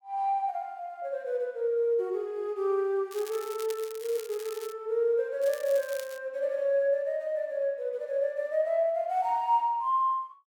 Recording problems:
crackling; from 3 to 4.5 s and at 5.5 s; loose cable, SNR 16 dB

